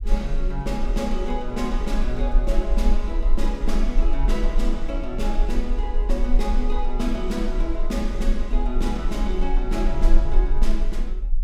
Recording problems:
low-frequency rumble; below 38 Hz, strongest tone 18 Hz, SNR -2 dB

